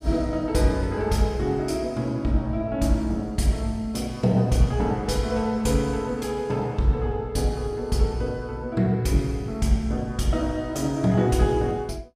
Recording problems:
none

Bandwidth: 15 kHz